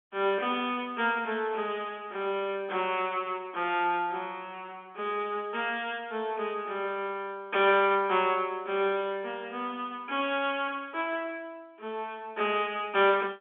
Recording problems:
phone line; 280 Hz to 3.5 kHz, G.711

